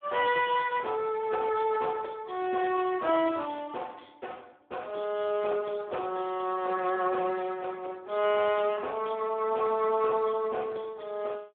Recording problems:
telephone audio; 280 Hz to 3.4 kHz, Speex

